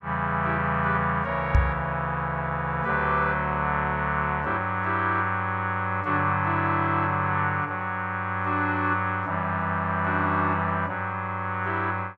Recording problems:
microphone thump; at 1.5 s; peak +8 dB vs average level

